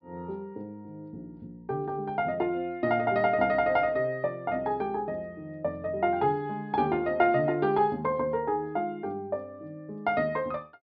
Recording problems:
treble cut off; nothing above 5.5 kHz

